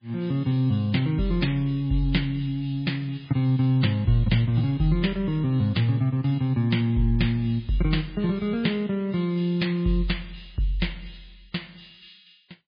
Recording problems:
lossy compression; MP3, log-spectral distance 4 dB, nothing above 4.5 kHz

